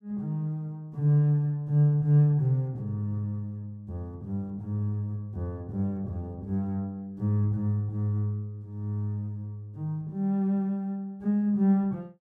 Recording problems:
none

